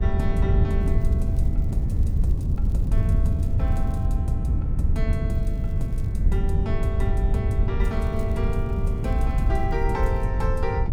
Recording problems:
hum; 60 Hz, harmonics up to 1.8 kHz, SNR 24 dB
wind on the microphone; below 94 Hz, SNR -8 dB
crackle; 4 times, first at 1 s; loose cable, SNR 26 dB

